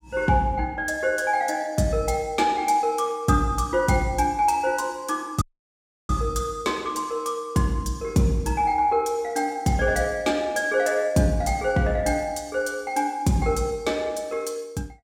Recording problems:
audio cutting out; at 5.5 s for 0.5 s

